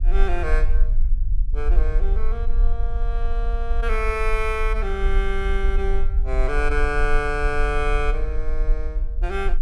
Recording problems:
low-frequency rumble; below 42 Hz, strongest tone 18 Hz, SNR -2 dB

